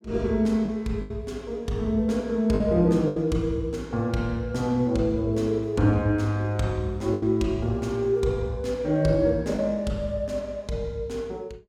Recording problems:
lost packets; 3% of the sound replaced, filled with the last packet

